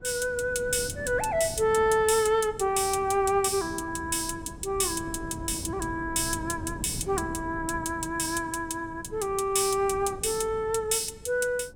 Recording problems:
wind noise; below 250 Hz, SNR 15 dB

